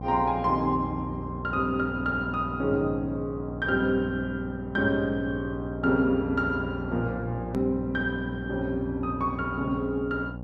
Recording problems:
hum; 60 Hz, harmonics up to 840 Hz, SNR 9 dB
hard cut with a click; at 7.5 s

